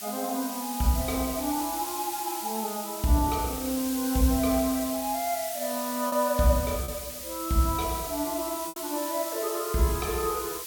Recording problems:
hiss; SNR 6 dB
packet loss; 1.5% of the sound replaced, filled with repeated pitch periods

